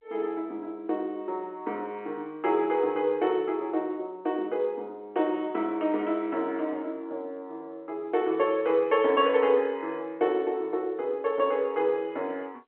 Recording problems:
phone line; 240 Hz to 3.4 kHz, G.711

